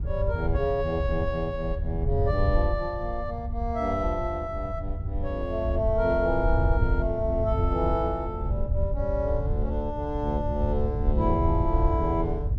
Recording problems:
wind noise; below 90 Hz, SNR 1 dB

